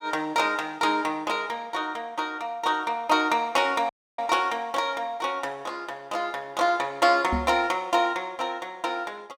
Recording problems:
dropout; at 4 s
knock on the microphone; at 7.5 s; peak +1 dB vs average level

